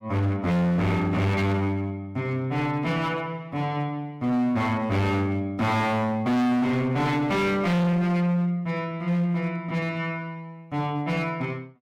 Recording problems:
distortion; hard clipping, signal-to-distortion ratio 6 dB

